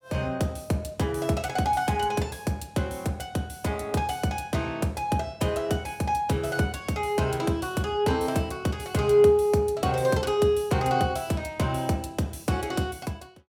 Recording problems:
none

